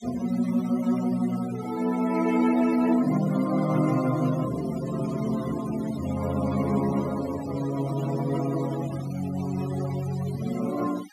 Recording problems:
noise reduction artefacts; signal-to-artefact ratio 16 dB

